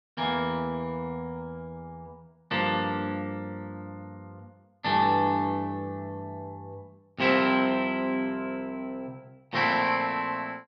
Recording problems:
none

